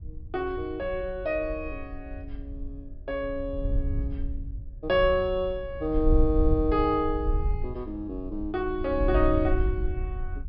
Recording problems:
treble missing; nothing above 5.5 kHz
wind on the microphone; below 66 Hz, SNR 5 dB

